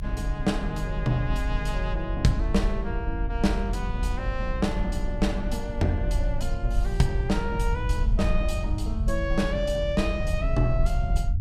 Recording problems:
low-frequency rumble; below 66 Hz, SNR 1 dB

